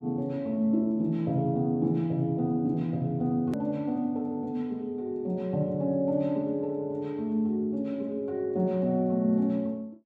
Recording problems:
hard cut with a click; at 3.5 s

